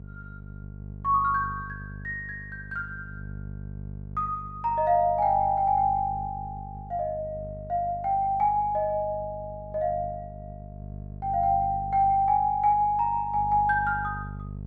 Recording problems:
hum; 50 Hz, harmonics up to 450 Hz, SNR 15 dB

